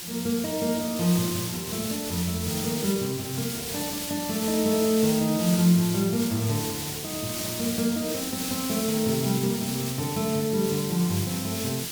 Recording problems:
background hiss; SNR 4 dB

